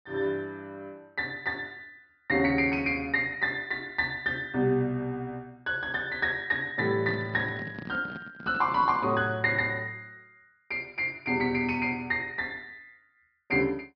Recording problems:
low-pass filter; nothing above 5.5 kHz
microphone handling noise; from 7 to 9 s; peak -8 dB vs average level

